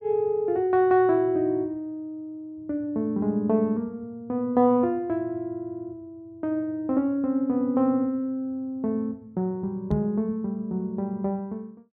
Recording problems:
microphone bump; at 10 s; peak +2 dB vs average level

